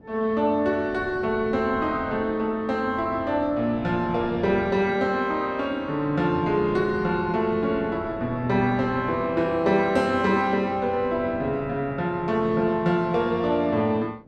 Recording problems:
wind noise; below 440 Hz, SNR 18 dB

